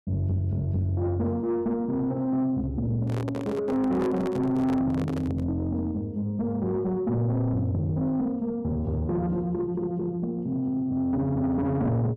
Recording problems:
distortion; soft clipping, signal-to-distortion ratio 11 dB
microphone handling noise; from 3 to 5.5 s; peak -1 dB vs average level

